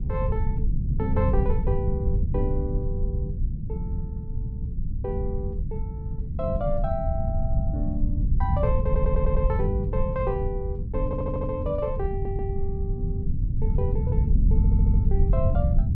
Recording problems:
low-frequency rumble; below 100 Hz, SNR -5 dB
stutter; 4 times, first at 9 s

